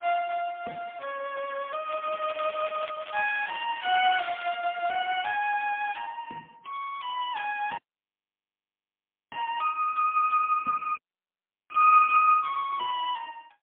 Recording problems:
telephone audio; 320 Hz to 3.3 kHz, AMR-NB, then MP3
crackle; from 2 to 4.5 s; loose cable, SNR 17 dB
dropout; at 8 s for 1.5 s and at 11 s for 0.5 s

